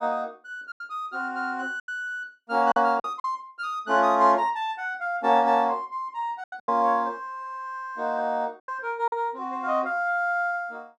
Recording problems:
packet loss; 5% of the sound replaced, filled with silence

